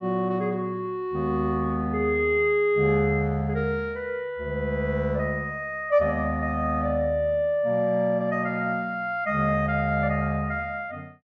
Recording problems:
none

